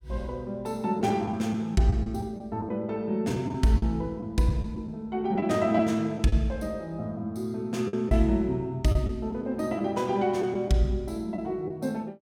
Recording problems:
packet loss; 5% of the sound replaced, filled with the last packet

